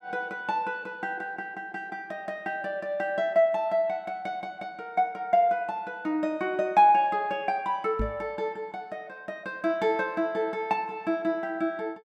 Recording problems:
microphone thump; at 8 s; peak +1 dB vs average level

